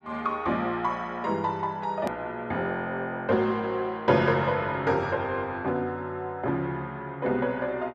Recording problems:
edit click; at 2 s

